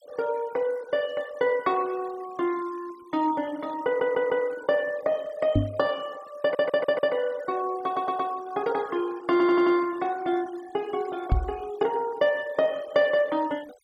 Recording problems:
noise reduction artefacts; signal-to-artefact ratio 23 dB
stutter; 4 times, first at 4 s
microphone bump; at 5.5 s and at 11 s; peak +7 dB vs average level

